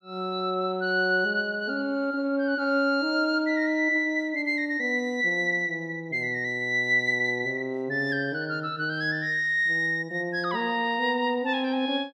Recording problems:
none

